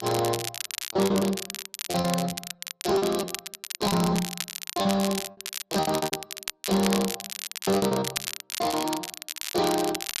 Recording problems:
codec artefacts; Speex, then Opus, log-spectral distance 4 dB
distortion; soft clipping, signal-to-distortion ratio 12 dB
crackle; vinyl, SNR 6 dB
packet loss; 20% of the sound replaced, filled with repeated pitch periods

